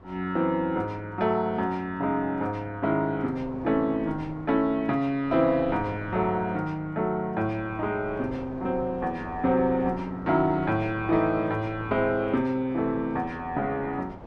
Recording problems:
wind noise; below 710 Hz, SNR 17 dB

